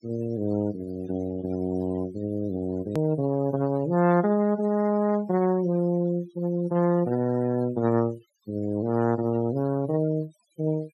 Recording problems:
denoising artefacts; signal-to-artefact ratio 21 dB
click at an edit; at 3 s

